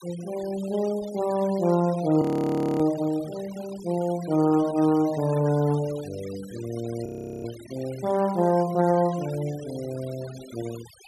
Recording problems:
noise reduction artefacts; signal-to-artefact ratio 19 dB
audio freezing; at 2 s for 0.5 s and at 7 s

